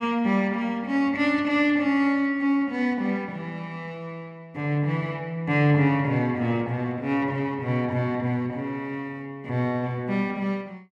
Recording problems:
none

